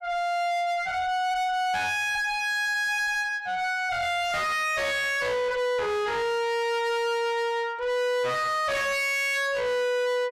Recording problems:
distortion; soft clipping, signal-to-distortion ratio 6 dB

